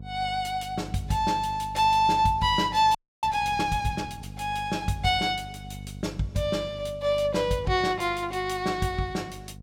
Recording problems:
hum; 50 Hz, harmonics up to 500 Hz, SNR 16 dB
audio freezing; at 3 s

